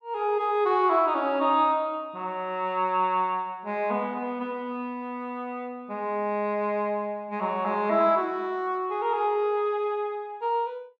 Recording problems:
none

